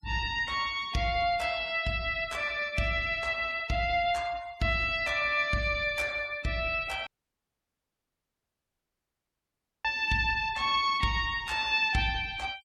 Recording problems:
noise reduction artefacts; signal-to-artefact ratio 22 dB
audio cutting out; at 7 s for 3 s

